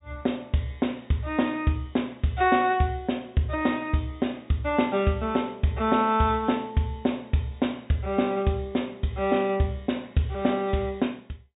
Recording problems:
low-pass filter; nothing above 4 kHz

